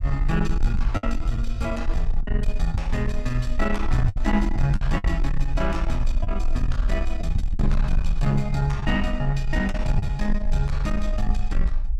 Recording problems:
distorted audio; soft clipping, signal-to-distortion ratio 12 dB
rumble; below 46 Hz, strongest tone 22 Hz, SNR 1 dB
lost packets; 5% of the sound replaced, filled with the last packet

